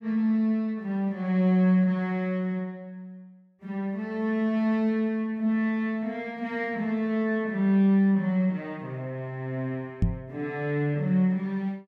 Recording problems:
microphone thump; at 10 s; peak +6 dB vs average level

